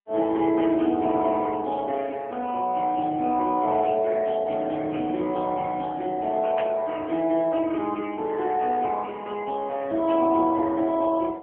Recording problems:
telephone audio; 190 Hz to 3.3 kHz, AMR-NB
burst of static; at 6.5 s and at 10 s; peak -7 dB vs average level

